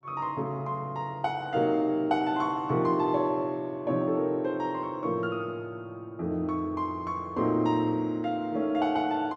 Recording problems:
none

